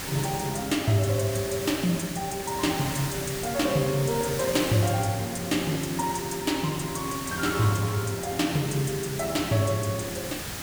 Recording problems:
background hiss; slope -2 dB per octave, SNR 7 dB

